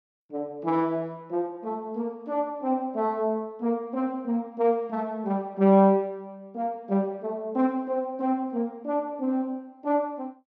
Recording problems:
none

